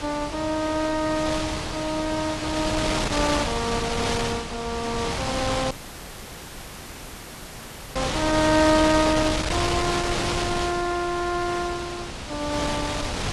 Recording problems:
lossy compression; AAC, log-spectral distance 4 dB
wind on the microphone; below 3.9 kHz, SNR 2 dB
dropout; at 5.5 s for 2 s

